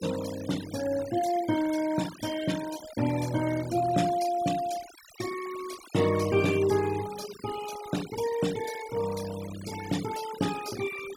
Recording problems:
noise reduction artefacts; signal-to-artefact ratio 13 dB

